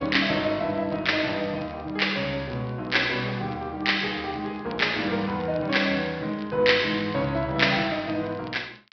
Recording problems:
low-pass filter; nothing above 5.5 kHz
crackling; vinyl, SNR 27 dB

